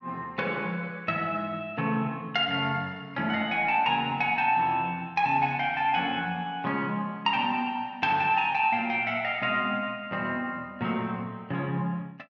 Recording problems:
none

